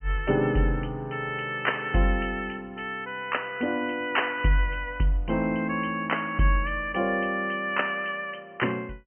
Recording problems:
treble missing; nothing above 3.1 kHz

